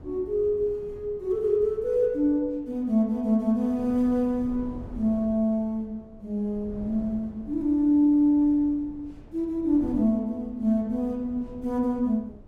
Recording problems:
wind noise; below 250 Hz, SNR 20 dB

